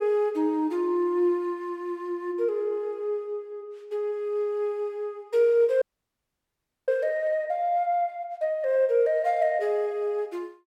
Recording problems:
frozen audio; at 6 s for 1 s

